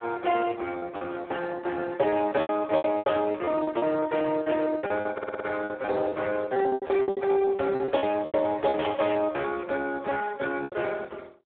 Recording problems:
phone line; 320 Hz to 2.5 kHz, Speex
lost packets; 16% of the sound replaced, filled with repeated pitch periods
audio stuttering; at 5 s
burst of static; at 9 s; peak -4 dB vs average level

